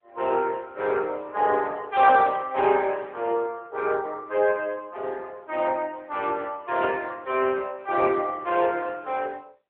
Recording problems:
phone line; 300 Hz to 3.5 kHz, AMR-NB

